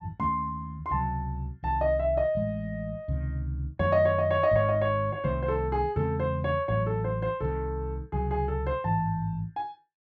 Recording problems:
treble cut off; nothing above 7.8 kHz

